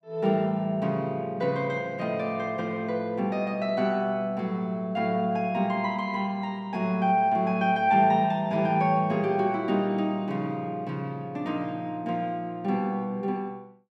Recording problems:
none

